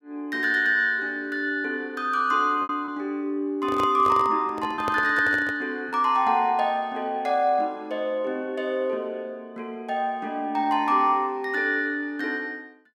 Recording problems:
lost packets; 1.3% of the sound replaced, filled with repeated pitch periods
microphone handling noise; from 3.5 to 5.5 s; peak -3 dB vs average level

